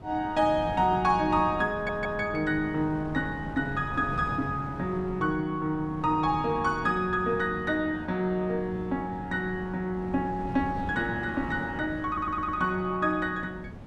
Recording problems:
wind on the microphone; below 320 Hz, SNR 12 dB
audio stuttering; at 1.5 s and at 12 s

